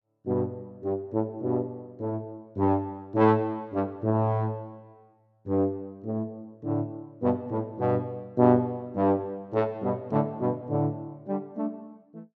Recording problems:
none

